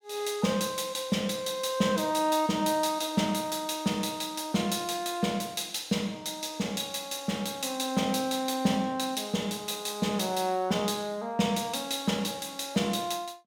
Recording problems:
none

